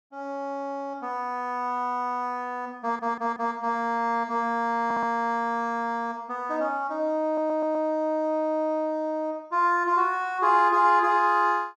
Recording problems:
audio stuttering; at 3 s, at 5 s and at 7.5 s

